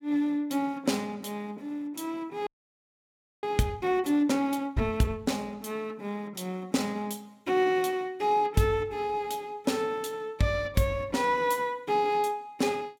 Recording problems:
audio freezing; at 2.5 s for 1 s

